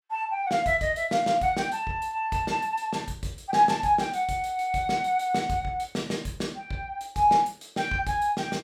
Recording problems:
none

